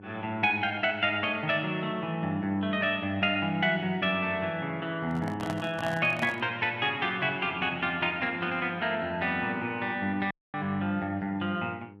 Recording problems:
electrical hum; 50 Hz, harmonics up to 900 Hz, SNR 22 dB
microphone handling noise; from 5 to 6.5 s; peak -3 dB vs average level
audio cutting out; at 10 s

